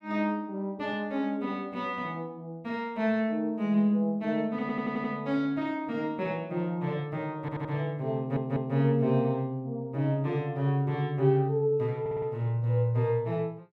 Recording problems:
audio stuttering; 4 times, first at 4.5 s

